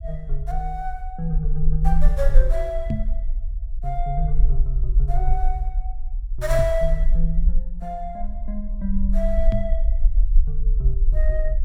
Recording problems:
low-frequency rumble; below 42 Hz, strongest tone 18 Hz, SNR -4 dB
microphone bump; at 3 s, at 6.5 s and at 9.5 s; peak +8 dB vs average level

